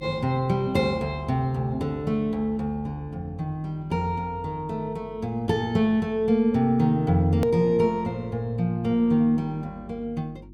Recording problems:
mains hum; 50 Hz, harmonics up to 350 Hz, SNR 22 dB
click at an edit; at 7.5 s

